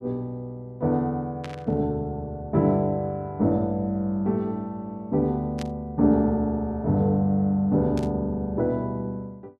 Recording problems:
burst of static; at 1.5 s, at 5.5 s and at 8 s; peak -9 dB vs average level

